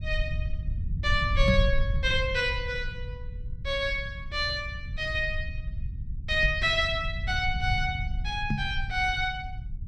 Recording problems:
rumble; below 92 Hz, SNR 5 dB
microphone thump; at 1.5 s, at 6.5 s and at 8.5 s; peak +4 dB vs average level

